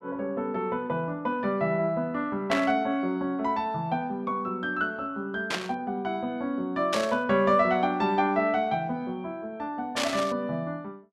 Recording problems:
static burst; 4 times, first at 2.5 s; peak +3 dB vs average level

